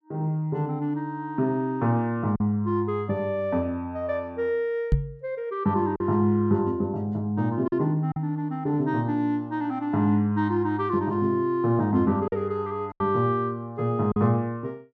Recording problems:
lost packets; 2% of the sound replaced, filled with silence
knock on the microphone; at 5 s; peak +7 dB vs average level

